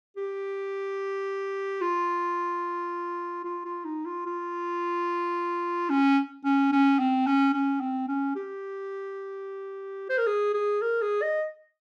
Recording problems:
none

